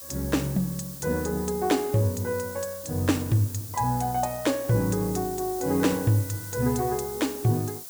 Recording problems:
hiss; SNR 11 dB

